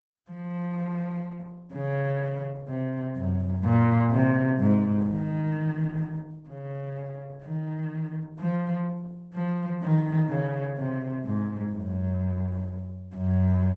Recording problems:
lossy compression; Opus, log-spectral distance 2 dB

